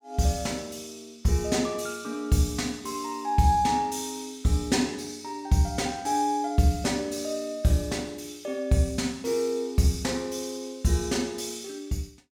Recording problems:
none

